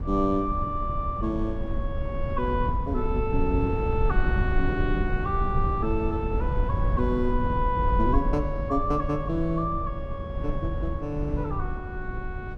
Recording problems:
rumble; below 96 Hz, SNR 1 dB

